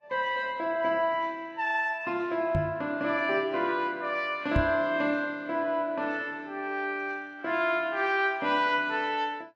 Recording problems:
lossy compression; Vorbis, log-spectral distance 2 dB
microphone bump; at 2.5 s and at 4.5 s; peak +5 dB vs average level

